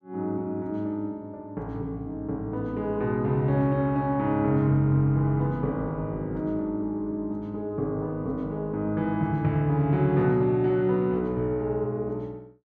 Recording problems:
none

